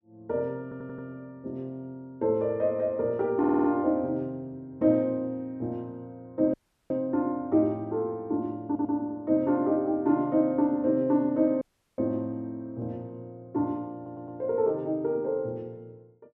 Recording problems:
stutter; 4 times, first at 0.5 s
audio cutting out; at 6.5 s and at 12 s

